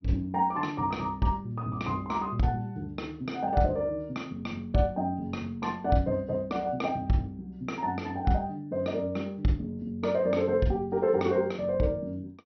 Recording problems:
treble cut off; nothing above 5.9 kHz

